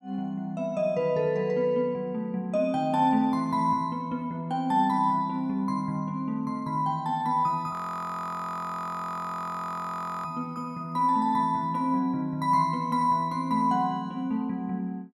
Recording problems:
audio freezing; at 7.5 s for 2.5 s

